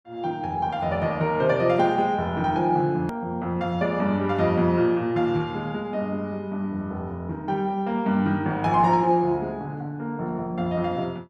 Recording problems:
click at an edit; at 3 s

